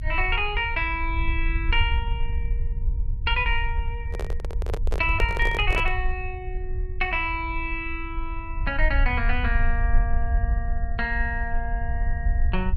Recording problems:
rumble; below 58 Hz, SNR 2 dB
handling noise; from 4 to 6 s; peak +1 dB vs average level

